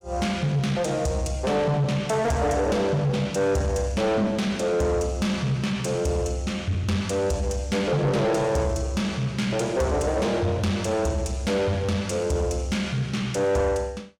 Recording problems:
distortion; soft clipping, signal-to-distortion ratio 11 dB

